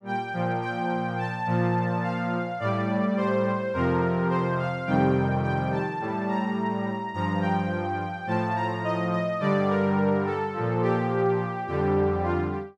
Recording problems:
none

